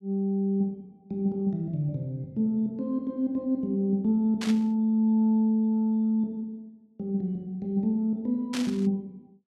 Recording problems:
static burst; at 4.5 s and at 8.5 s; peak -4 dB vs average level

